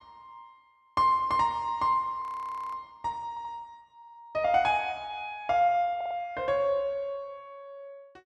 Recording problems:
frozen audio; at 2 s for 0.5 s
audio stuttering; at 3.5 s, at 4 s and at 6 s

